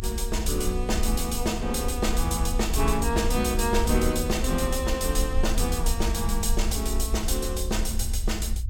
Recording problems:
low-frequency rumble; below 62 Hz, strongest tone 30 Hz, SNR 3 dB

